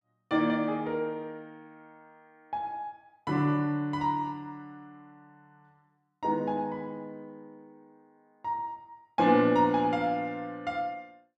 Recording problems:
none

